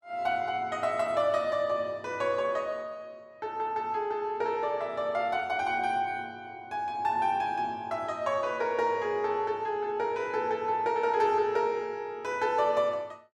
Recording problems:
none

